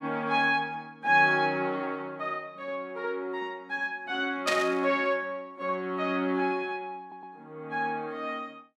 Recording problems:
static burst; at 4.5 s; peak +4 dB vs average level
stutter; at 7 s

